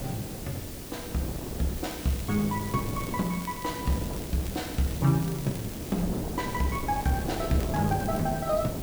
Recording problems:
background hiss; slope +1 dB per octave, SNR 11 dB
wind on the microphone; below 420 Hz, SNR 6 dB
crackle; from 2 to 6 s and from 6.5 to 8 s; loose cable, SNR 17 dB

